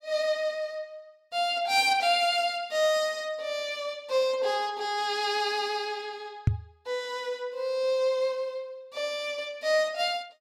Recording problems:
microphone thump; at 6.5 s; peak +8 dB vs average level

